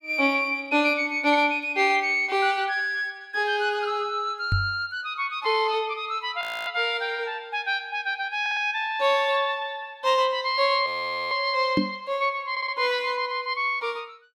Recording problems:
microphone bump; at 4.5 s and at 12 s; peak +5 dB vs average level
frozen audio; at 6.5 s and at 11 s
audio stuttering; at 8.5 s and at 13 s

